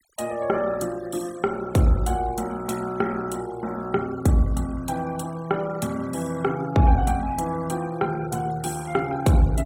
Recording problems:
denoising artefacts; signal-to-artefact ratio 19 dB

